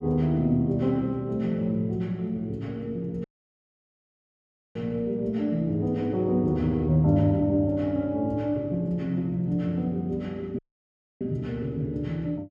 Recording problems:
dropout; at 3 s for 1.5 s and at 11 s for 0.5 s

